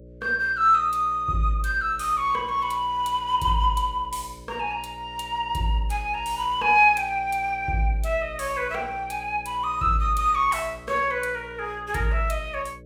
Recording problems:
hum; 60 Hz, harmonics up to 600 Hz, SNR 21 dB

